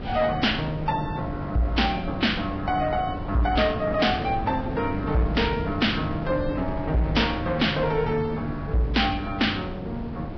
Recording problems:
lossy compression; Vorbis, log-spectral distance 3 dB, nothing above 5.3 kHz
distorted audio; soft clipping, signal-to-distortion ratio 12 dB
wind on the microphone; below 340 Hz, SNR 8 dB

